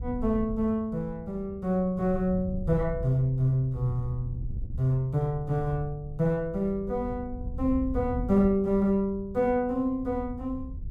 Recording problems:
wind on the microphone; below 92 Hz, SNR 11 dB

